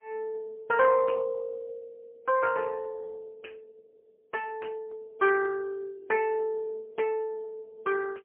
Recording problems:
telephone audio; 340 Hz to 3 kHz, AMR-NB, then MP3

